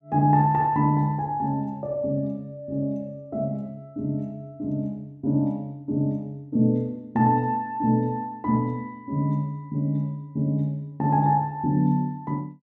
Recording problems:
none

